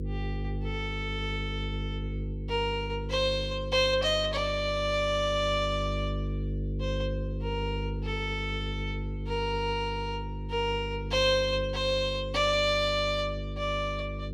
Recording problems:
electrical hum; 50 Hz, harmonics up to 500 Hz, SNR 6 dB

